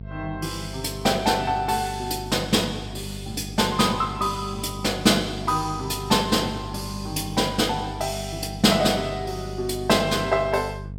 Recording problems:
electrical hum; 50 Hz, harmonics up to 500 Hz, SNR 12 dB

